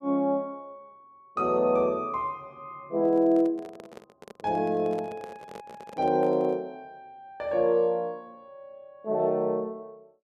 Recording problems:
handling noise; from 3 to 6.5 s; peak -11 dB vs average level

